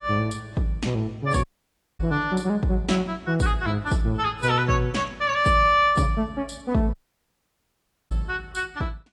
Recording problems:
lossy codec; AAC, log-spectral distance 2 dB, nothing above 10.7 kHz
audio cutting out; at 1.5 s for 0.5 s and at 7 s for 1 s

